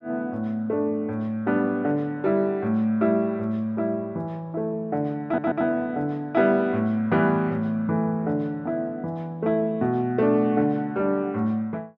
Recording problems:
audio stuttering; at 5.5 s

